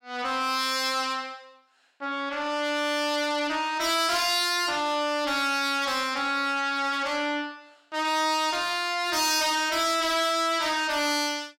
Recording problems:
distortion; soft clipping, signal-to-distortion ratio 7 dB

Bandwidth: 16.5 kHz